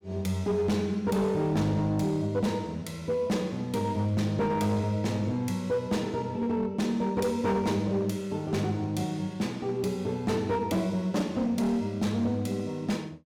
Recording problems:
distortion; hard clipping, signal-to-distortion ratio 12 dB

